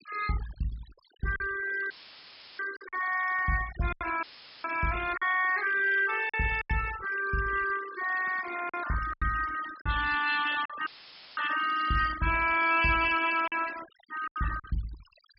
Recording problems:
treble missing; nothing above 5.3 kHz
denoising artefacts; signal-to-artefact ratio 13 dB
lost packets; 6% of the sound replaced, filled with silence
dropout; at 2 s for 0.5 s, at 4 s and at 11 s for 0.5 s; filled with static

